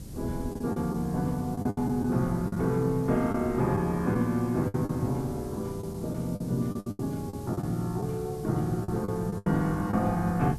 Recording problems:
background hiss; slope +2 dB per octave, SNR 23 dB
wind noise; below 200 Hz, SNR 14 dB
lost packets; 9% of the sound replaced, filled with the last packet

